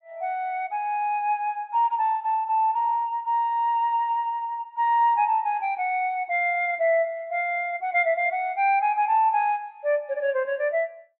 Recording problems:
treble missing; nothing above 4 kHz

